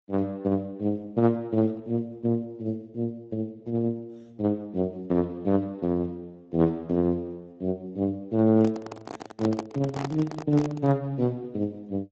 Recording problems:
codec artefacts; Speex, then Opus, log-spectral distance 2 dB
microphone handling noise; from 8.5 to 11 s; peak -2 dB vs average level

